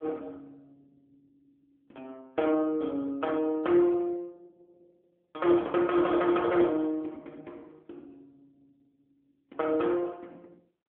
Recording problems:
telephone audio; 240 Hz to 2.5 kHz, AMR-NB

